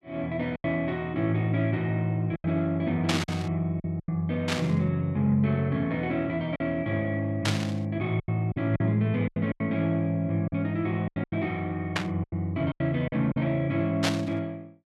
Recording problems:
lost packets; 8% of the sound replaced, filled with silence
burst of static; 5 times, first at 3 s; peak +4 dB vs average level

